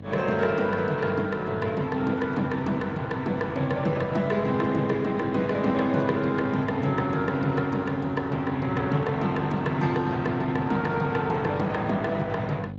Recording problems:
lossy compression; Speex, log-spectral distance 3 dB
hum; 50 Hz, harmonics up to 750 Hz, SNR 15 dB

